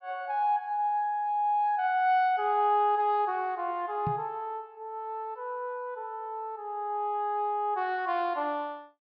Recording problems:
treble cut off; nothing above 5.5 kHz
microphone thump; at 4 s; peak -1 dB vs average level

